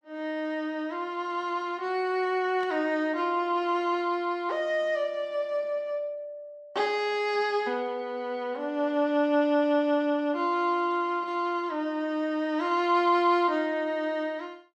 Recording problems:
static burst; at 2.5 s; peak -15 dB vs average level

